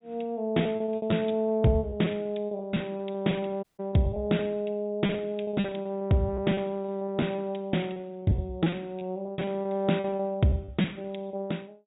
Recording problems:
treble cut off; nothing above 4 kHz
lost packets; 18% of the sound replaced, filled with repeated pitch periods
dropout; at 3.5 s

